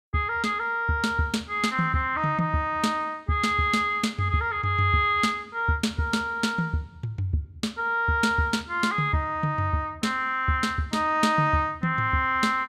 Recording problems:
none

